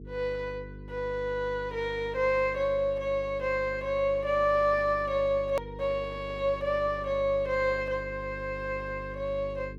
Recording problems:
hum; 50 Hz, harmonics up to 450 Hz, SNR 14 dB
click at an edit; at 5.5 s

